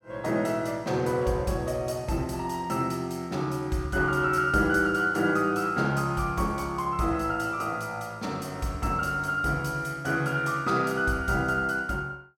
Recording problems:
none

